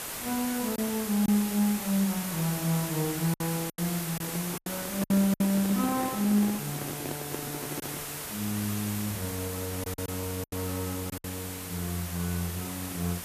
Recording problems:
background hiss; slope -2 dB per octave, SNR 5 dB
packet loss; 5% of the sound replaced, filled with silence
microphone handling noise; from 4 to 8 s; peak -2 dB vs average level

